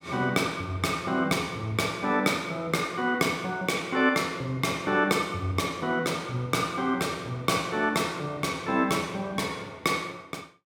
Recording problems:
none

